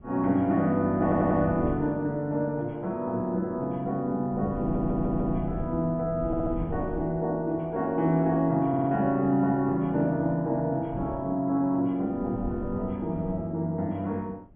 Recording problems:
low-pass filter; nothing above 3.4 kHz
wind on the microphone; below 170 Hz, SNR 13 dB
audio stuttering; 4 times, first at 1 s

